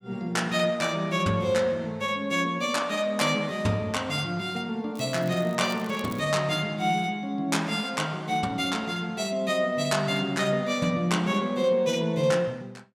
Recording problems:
crackle; from 5 to 6 s; loose cable, SNR 22 dB

